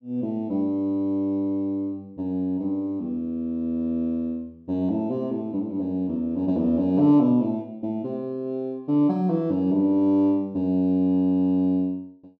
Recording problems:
none

